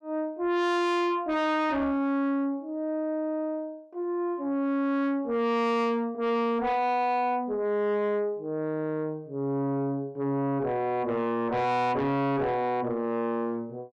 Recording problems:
distorted audio; soft clipping, signal-to-distortion ratio 6 dB

